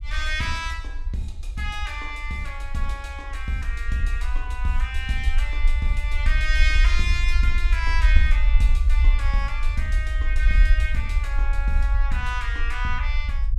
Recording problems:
low-frequency rumble; below 54 Hz, SNR -4 dB

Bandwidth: 14 kHz